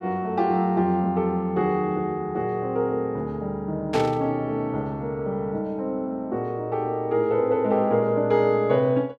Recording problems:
static burst; at 4 s; peak -4 dB vs average level

